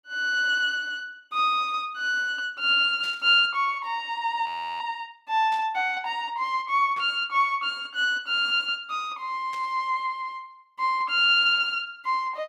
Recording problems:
burst of static; 4 times, first at 3 s; peak -15 dB vs average level
frozen audio; at 4.5 s

